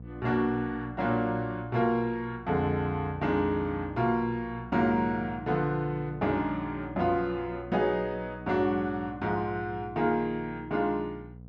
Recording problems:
hum; 60 Hz, harmonics up to 720 Hz, SNR 16 dB

